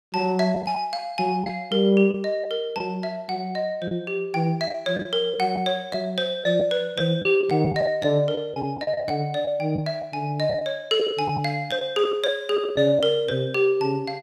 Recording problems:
lost packets; 6% of the sound replaced, filled with the last packet

